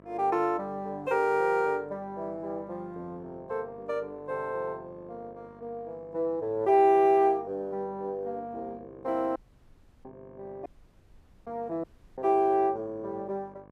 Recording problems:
hum; 50 Hz, harmonics up to 1.8 kHz, SNR 25 dB
audio cutting out; at 9.5 s for 0.5 s, at 11 s for 1 s and at 12 s

